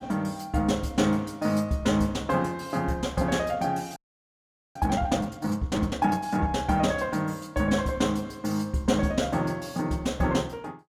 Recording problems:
audio freezing; at 4 s for 1 s

